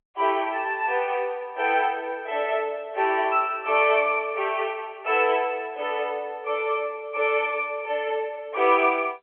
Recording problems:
telephone audio; 340 Hz to 3.4 kHz, G.711

